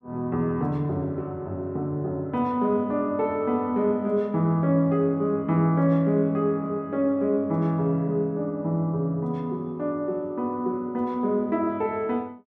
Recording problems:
none

